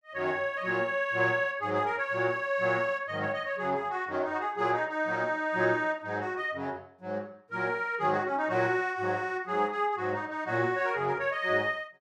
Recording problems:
none

